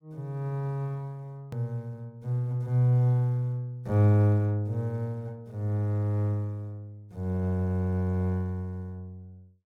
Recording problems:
edit click; at 1.5 s

